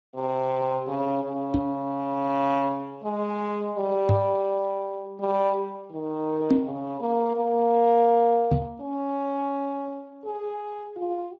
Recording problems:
codec artefacts; Speex, log-spectral distance 2 dB
microphone bump; 4 times, first at 1.5 s; peak +10 dB vs average level

